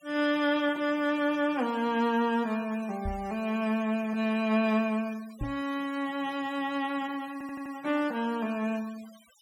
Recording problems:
denoising artefacts; signal-to-artefact ratio 21 dB
microphone bump; at 3 s and at 5.5 s; peak -2 dB vs average level
audio stuttering; at 7.5 s

